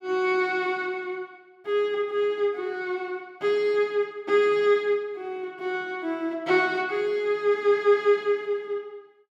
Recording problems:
none

